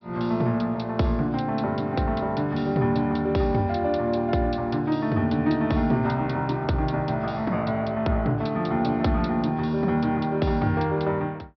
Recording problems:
treble cut off; nothing above 5.5 kHz

